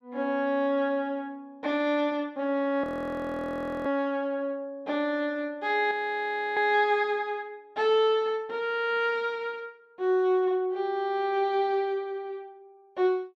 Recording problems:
audio freezing; at 3 s for 1 s and at 6 s for 0.5 s

